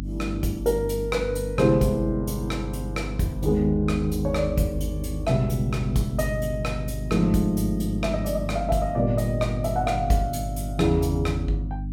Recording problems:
mains hum; 50 Hz, harmonics up to 300 Hz, SNR 7 dB

